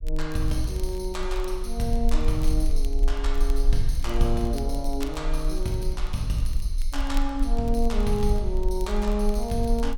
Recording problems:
rumble; below 38 Hz, strongest tone 20 Hz, SNR 1 dB
crackle; vinyl, SNR 21 dB

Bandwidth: 17.5 kHz